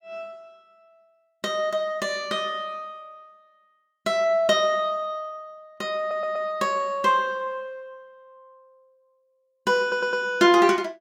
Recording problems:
stutter; at 6 s and at 10 s

